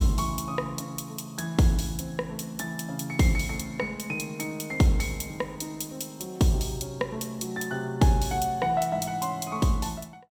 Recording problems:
none

